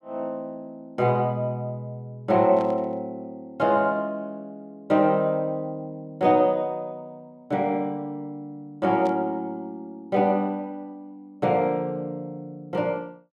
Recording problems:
burst of static; at 2.5 s and at 9 s; peak -15 dB vs average level

